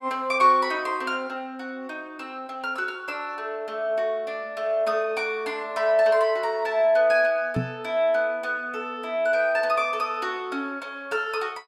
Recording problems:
microphone thump; at 7.5 s; peak +2 dB vs average level

